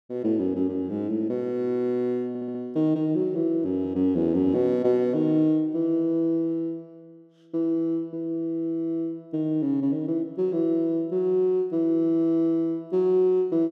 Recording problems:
stutter; at 2.5 s

